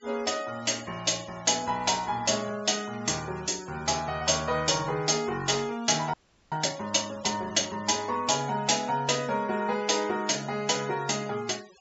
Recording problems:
low-pass filter; nothing above 8 kHz
denoising artefacts; signal-to-artefact ratio 19 dB
frozen audio; at 6 s

